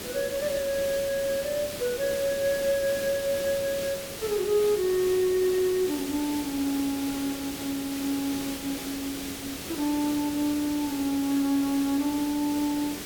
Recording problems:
hiss; SNR 8 dB

